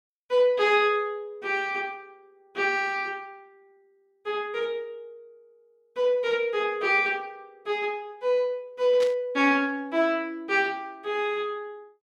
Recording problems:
static burst; at 9 s; peak -7 dB vs average level

